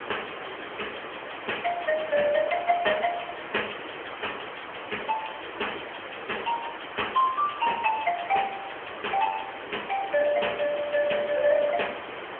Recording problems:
telephone audio; 280 Hz to 3.2 kHz, AMR-NB
hiss; SNR 10 dB

